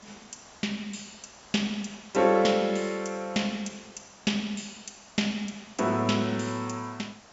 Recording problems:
treble missing; nothing above 8 kHz
hiss; SNR 23 dB

